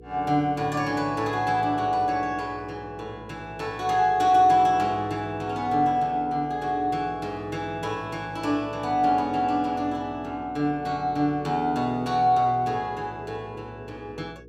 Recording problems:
hum; 60 Hz, harmonics up to 480 Hz, SNR 23 dB

